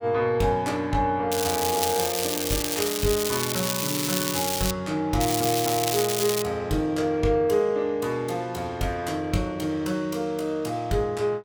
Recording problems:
crackle; from 1.5 to 4.5 s and from 5 to 6.5 s; loose cable, SNR 1 dB

